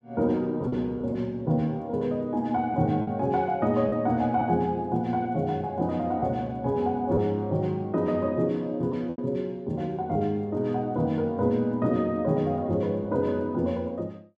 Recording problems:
lost packets; 2% of the sound replaced, filled with repeated pitch periods

